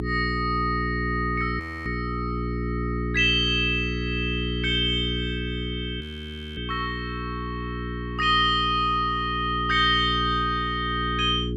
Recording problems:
hum; 60 Hz, harmonics up to 420 Hz, SNR 6 dB
audio freezing; at 1.5 s and at 6 s for 0.5 s

